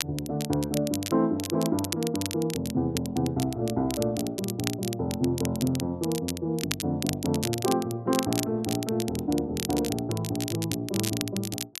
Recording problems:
crackle; vinyl, SNR 7 dB

